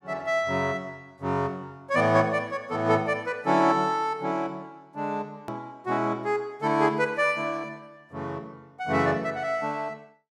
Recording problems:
click at an edit; at 5.5 s

